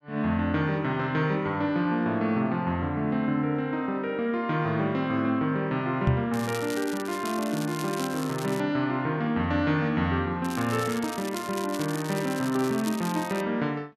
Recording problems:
microphone bump; at 6 s; peak +7 dB vs average level
crackle; from 6.5 to 8.5 s and from 10 to 13 s; loose cable, SNR 13 dB

